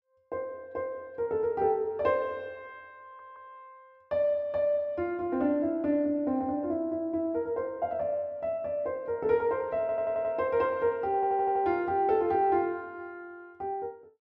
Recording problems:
audio stuttering; at 3 s, at 10 s and at 11 s

